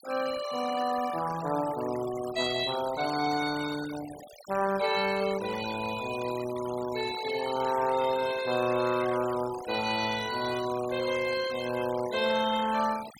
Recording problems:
noise reduction artefacts; signal-to-artefact ratio 13 dB

